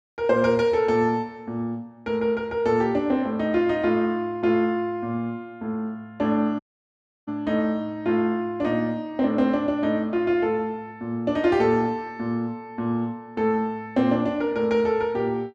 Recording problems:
dropout; at 6.5 s for 0.5 s

